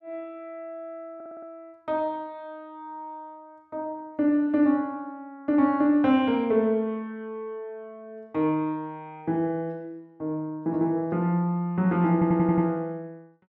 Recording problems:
audio stuttering; at 1 s and at 12 s

